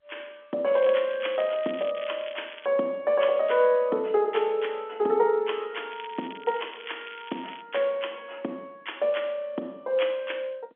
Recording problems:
phone line; 240 Hz to 3.4 kHz, G.711
crackle; from 0.5 to 2.5 s and from 6 to 7.5 s; loose cable, SNR 17 dB

